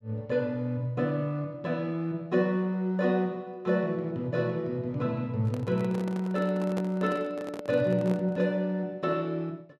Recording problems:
microphone handling noise; from 5.5 to 8.5 s; peak -3 dB vs average level

